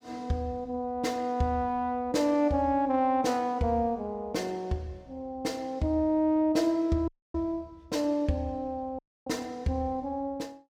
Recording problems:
dropout; at 7 s and at 9 s

